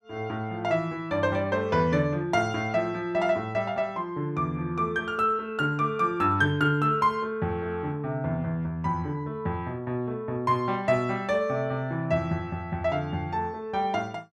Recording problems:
none

